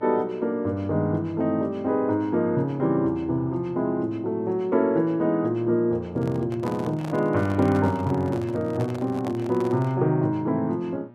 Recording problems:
mains hum; 60 Hz, harmonics up to 1.6 kHz, SNR 25 dB
handling noise; from 6 to 10 s; peak -8 dB vs average level

